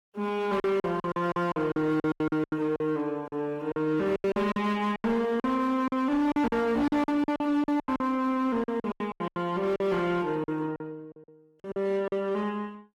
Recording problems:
lossy codec; Opus, log-spectral distance 2 dB, nothing above 20.1 kHz
distortion; hard clipping, uneven, signal-to-distortion ratio 12 dB
packet loss; 16% of the sound replaced, filled with silence

